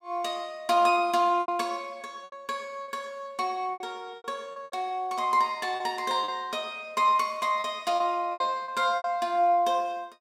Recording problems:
lost packets; 8% of the sound replaced, filled with repeated pitch periods

